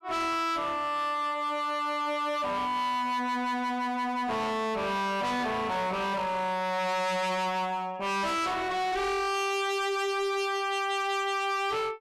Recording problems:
distorted audio; hard clipping, uneven, signal-to-distortion ratio 6 dB

